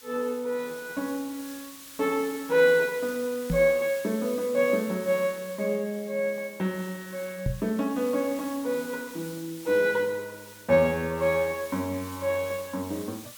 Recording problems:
hiss; SNR 17 dB
microphone bump; at 3.5 s and at 7.5 s; peak +2 dB vs average level

